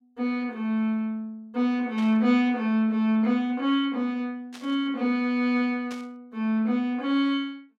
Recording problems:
static burst; at 2 s, at 4.5 s and at 6 s; peak -12 dB vs average level

